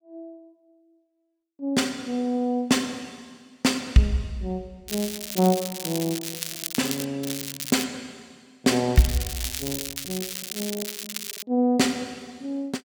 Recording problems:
crackling; from 5 to 7 s, at 7 s and from 9 to 11 s; loose cable, SNR 6 dB

